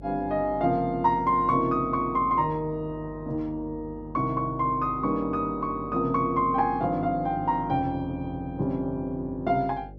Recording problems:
electrical hum; 50 Hz, harmonics up to 600 Hz, SNR 18 dB

